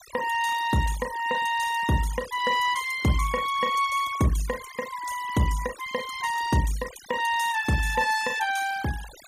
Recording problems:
noise reduction artefacts; signal-to-artefact ratio 14 dB

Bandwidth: 15.5 kHz